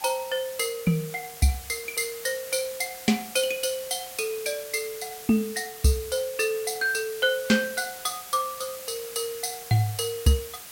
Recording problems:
hiss; slope 0 dB per octave, SNR 12 dB

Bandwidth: 16.5 kHz